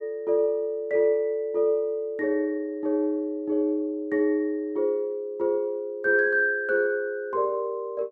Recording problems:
none

